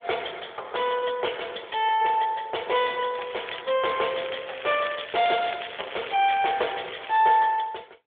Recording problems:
phone line; 340 Hz to 3.5 kHz, AMR-NB
crackling; at 3 s and from 4 to 7 s; loose cable, SNR 12 dB

